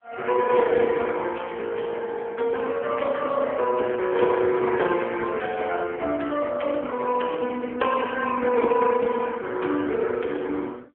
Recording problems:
telephone audio; 240 Hz to 3.3 kHz, AMR-NB

